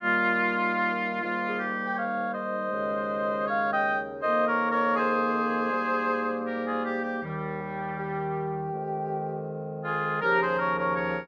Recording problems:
none

